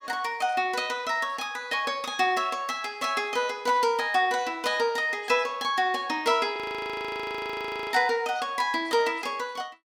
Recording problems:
frozen audio; at 6.5 s for 1.5 s

